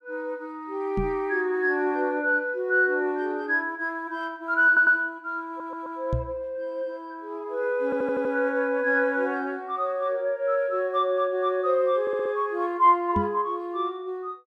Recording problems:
knock on the microphone; at 1 s, at 6 s and at 13 s; peak +1 dB vs average level
audio stuttering; 4 times, first at 4.5 s

